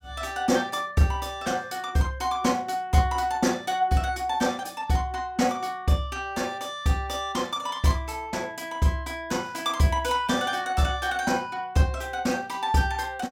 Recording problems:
none

